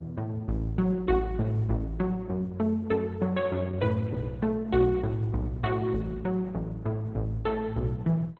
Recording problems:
codec artefacts; MP2, then Opus, log-spectral distance 2 dB

